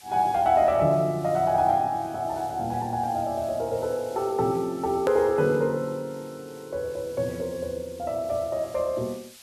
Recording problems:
hiss; slope +3 dB per octave, SNR 23 dB
click at an edit; at 5 s

